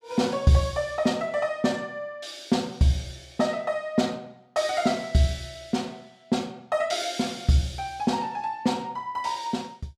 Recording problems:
none

